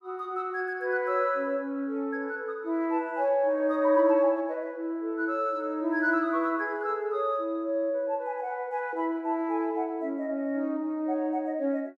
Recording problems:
none

